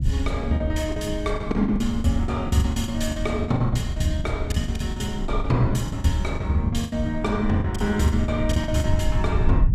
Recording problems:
rumble; below 100 Hz, SNR 5 dB
lost packets; 15% of the sound replaced, filled with the last packet

